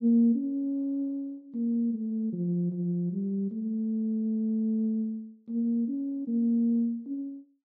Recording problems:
none

